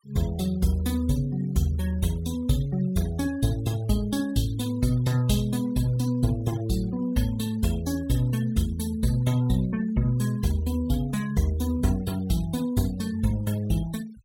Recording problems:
denoising artefacts; signal-to-artefact ratio 21 dB

